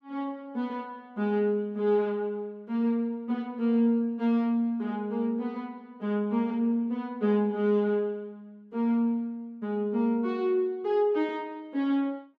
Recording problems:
none

